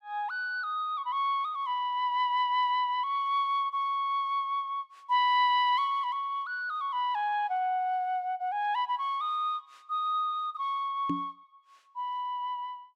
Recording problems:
microphone bump; at 11 s; peak +1 dB vs average level

